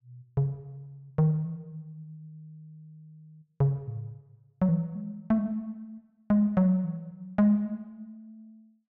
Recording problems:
none

